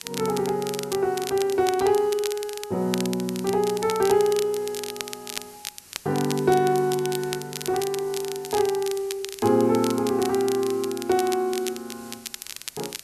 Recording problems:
hiss; slope 0 dB per octave, SNR 22 dB
crackling; vinyl, SNR 11 dB

